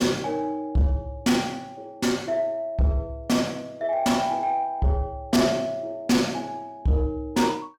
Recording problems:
distortion; soft clipping, signal-to-distortion ratio 11 dB

